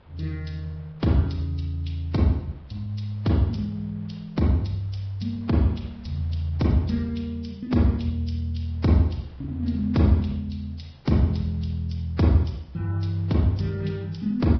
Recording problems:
lossy compression; Vorbis, log-spectral distance 2 dB, nothing above 5.2 kHz
wind on the microphone; below 790 Hz, SNR 29 dB

